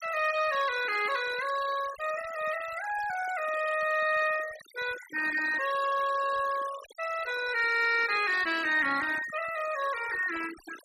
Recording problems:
noise reduction artefacts; signal-to-artefact ratio 13 dB

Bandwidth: 14.5 kHz